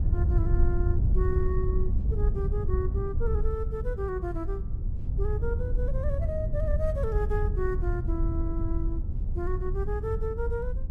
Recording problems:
wind on the microphone; below 82 Hz, SNR -5 dB

